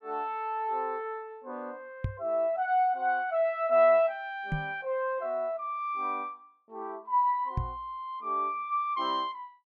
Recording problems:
microphone thump; at 2 s, at 4.5 s and at 7.5 s; peak +2 dB vs average level

